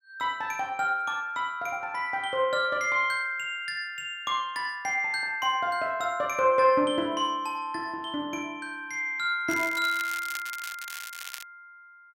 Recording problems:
crackling; from 9.5 to 11 s; loose cable, SNR 12 dB

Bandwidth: 16 kHz